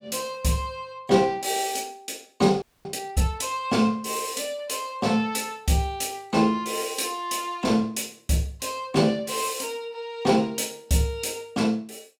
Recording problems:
audio freezing; at 2.5 s

